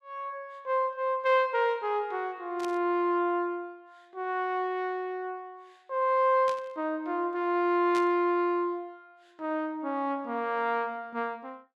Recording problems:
burst of static; at 2.5 s, at 6.5 s and at 8 s; peak -7 dB vs average level

